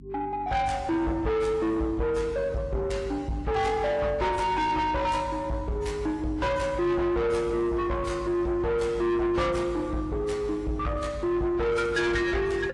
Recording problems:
lossy compression; AAC, log-spectral distance 2 dB, nothing above 10.4 kHz
distorted audio; soft clipping, signal-to-distortion ratio 8 dB
hum; 50 Hz, harmonics up to 300 Hz, SNR 19 dB

